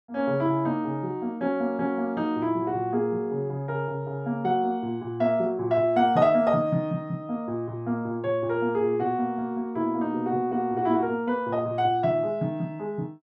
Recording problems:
none

